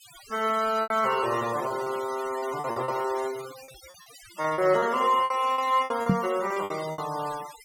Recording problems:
noise reduction artefacts; signal-to-artefact ratio 16 dB
packet loss; 12% of the sound replaced, filled with repeated pitch periods
knock on the microphone; at 6 s; peak +7 dB vs average level

